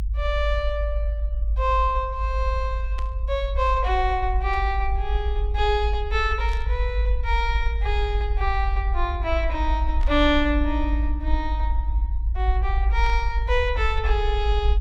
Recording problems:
rumble; below 54 Hz, strongest tone 52 Hz, SNR 0 dB
static burst; 5 times, first at 3 s; peak -10 dB vs average level

